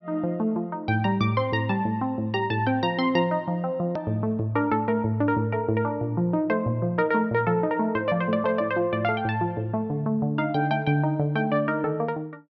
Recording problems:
treble missing; nothing above 6 kHz
click at an edit; at 4 s

